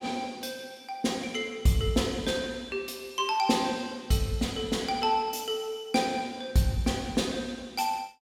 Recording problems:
none

